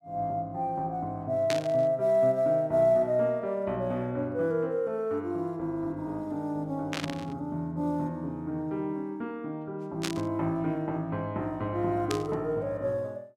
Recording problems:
static burst; 4 times, first at 1.5 s; peak +1 dB vs average level

